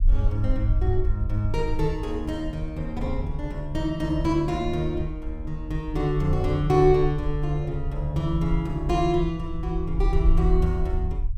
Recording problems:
low-frequency rumble; below 56 Hz, SNR 4 dB

